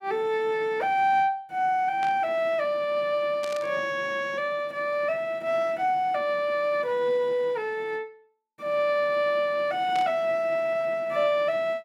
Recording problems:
static burst; at 2 s, at 3.5 s and at 10 s; peak -9 dB vs average level

